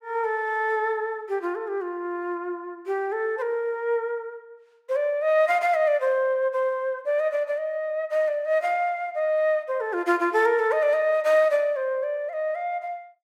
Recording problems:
none

